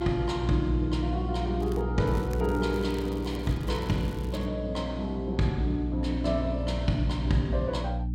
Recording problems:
hum; 60 Hz, harmonics up to 300 Hz, SNR 3 dB
crackle; at 1.5 s and from 2 to 4.5 s; loose cable, SNR 22 dB

